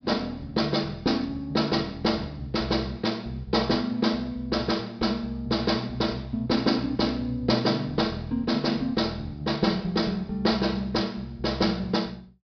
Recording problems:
treble cut off; nothing above 5.5 kHz

